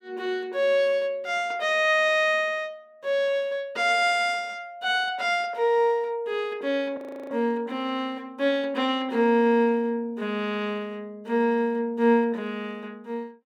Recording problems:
audio freezing; at 7 s

